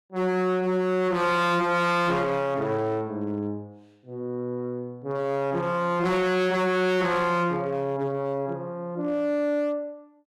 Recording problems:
distortion; hard clipping, signal-to-distortion ratio 6 dB

